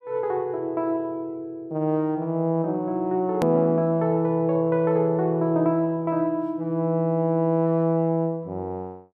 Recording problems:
hard cut with a click; at 3.5 s

